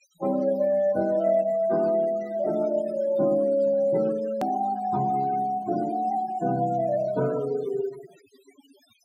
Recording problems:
denoising artefacts; signal-to-artefact ratio 19 dB
hard cut with a click; at 4.5 s

